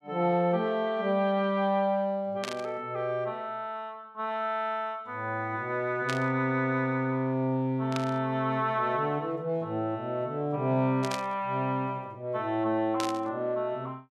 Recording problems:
static burst; 5 times, first at 2.5 s; peak -1 dB vs average level

